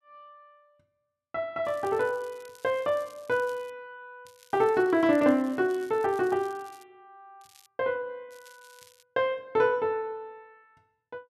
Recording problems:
crackle; 4 times, first at 1.5 s; loose cable, SNR 27 dB

